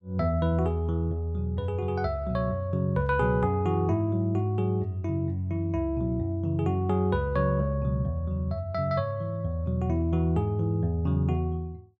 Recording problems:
none

